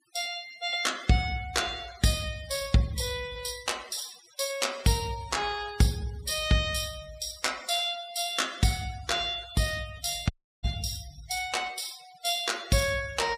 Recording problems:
noise reduction artefacts; signal-to-artefact ratio 18 dB
audio cutting out; at 10 s

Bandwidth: 15 kHz